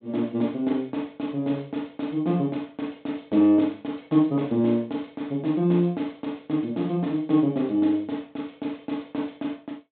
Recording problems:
low-pass filter; nothing above 4 kHz

